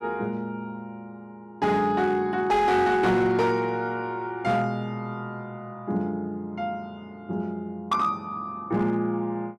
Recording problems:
distorted audio; hard clipping, signal-to-distortion ratio 12 dB

